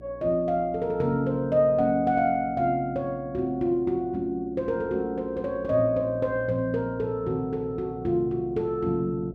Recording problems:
hum; 60 Hz, harmonics up to 720 Hz, SNR 21 dB

